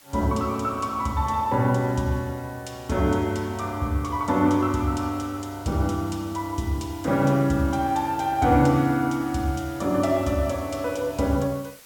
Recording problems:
hiss; slope -1 dB per octave, SNR 24 dB

